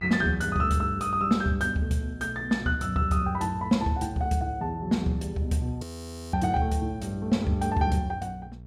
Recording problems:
hum; 60 Hz, harmonics up to 480 Hz, SNR 18 dB
audio freezing; at 6 s for 0.5 s

